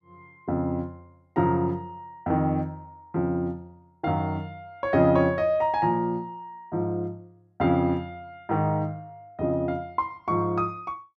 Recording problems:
none

